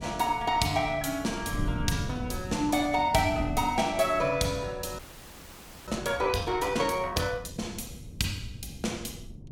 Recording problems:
wind noise; below 180 Hz, SNR 12 dB
frozen audio; at 5 s for 1 s

